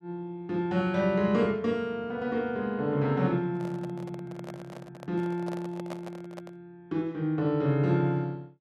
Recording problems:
microphone handling noise; from 3.5 to 6.5 s; peak -7 dB vs average level

